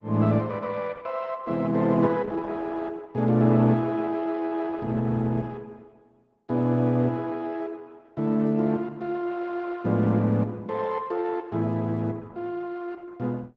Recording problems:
codec artefacts; Opus, log-spectral distance 3 dB

